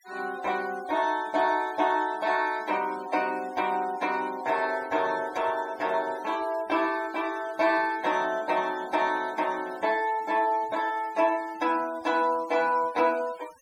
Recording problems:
noise reduction artefacts; signal-to-artefact ratio 20 dB

